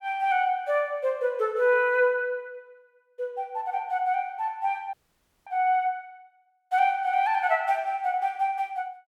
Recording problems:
frozen audio; at 5 s for 0.5 s

